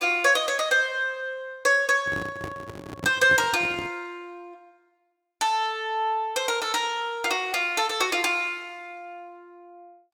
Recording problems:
handling noise; from 2 to 4 s; peak -5 dB vs average level

